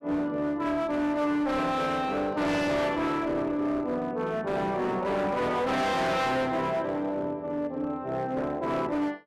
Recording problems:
distorted audio; hard clipping, signal-to-distortion ratio 8 dB

